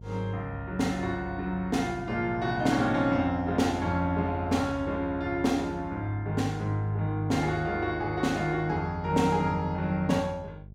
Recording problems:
hum; 50 Hz, harmonics up to 450 Hz, SNR 18 dB

